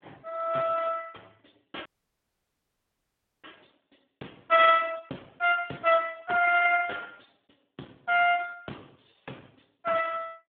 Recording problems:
phone line; 320 Hz to 2.6 kHz, Speex
audio cutting out; at 2 s for 1.5 s

